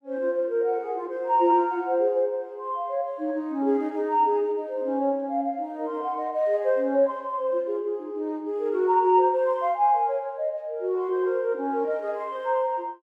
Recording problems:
none

